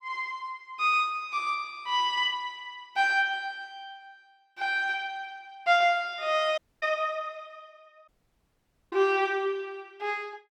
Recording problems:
dropout; at 6.5 s and at 8 s for 1 s

